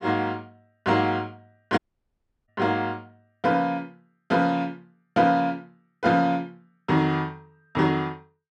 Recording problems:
dropout; at 2 s for 0.5 s

